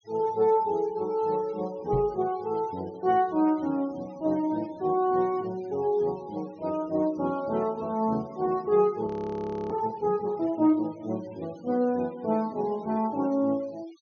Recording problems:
treble cut off; nothing above 6.5 kHz
denoising artefacts; signal-to-artefact ratio 25 dB
microphone thump; at 2 s; peak 0 dB vs average level
audio freezing; at 9 s for 0.5 s

